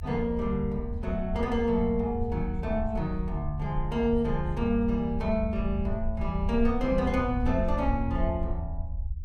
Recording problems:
low-frequency rumble; below 76 Hz, SNR 6 dB

